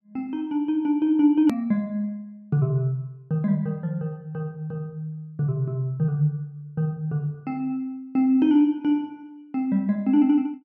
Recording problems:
hard cut with a click; at 1.5 s

